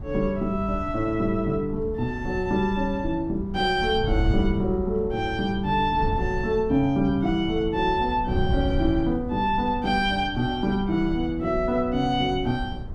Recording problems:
wind on the microphone; below 110 Hz, SNR 9 dB

